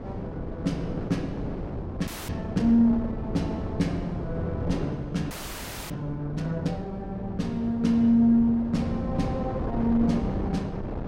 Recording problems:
wind noise; below 400 Hz, SNR 8 dB
audio freezing; at 2 s and at 5.5 s for 0.5 s

